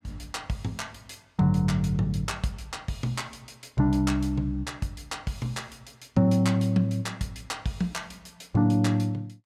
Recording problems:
none

